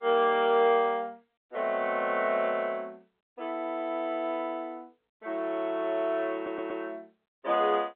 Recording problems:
telephone audio; 240 Hz to 3.7 kHz, G.711
audio stuttering; at 6.5 s

